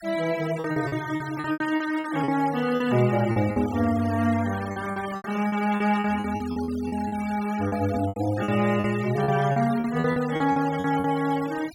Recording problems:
noise reduction artefacts; signal-to-artefact ratio 16 dB
packet loss; 14% of the sound replaced, filled with repeated pitch periods

